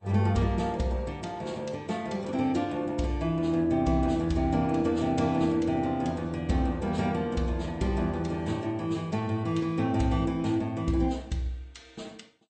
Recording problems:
codec artefacts; Vorbis, then MP2, log-spectral distance 2 dB, nothing above 8.2 kHz

